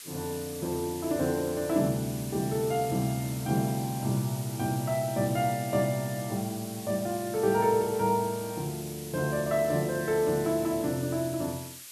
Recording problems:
background hiss; slope +4 dB per octave, SNR 12 dB

